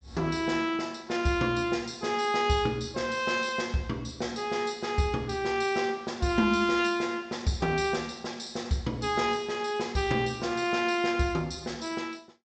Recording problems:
treble cut off; nothing above 8 kHz

